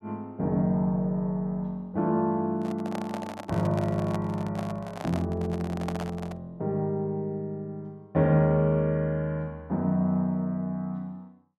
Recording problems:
microphone handling noise; from 2.5 to 6.5 s; peak -3 dB vs average level

